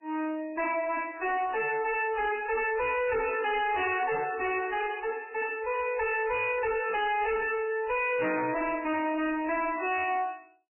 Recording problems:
codec artefacts; MP3, log-spectral distance 6 dB, nothing above 2.7 kHz
distorted audio; hard clipping, uneven, signal-to-distortion ratio 5 dB

